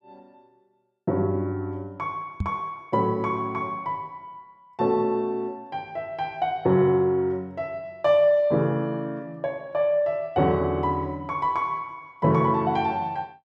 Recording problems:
microphone bump; at 2.5 s; peak +1 dB vs average level

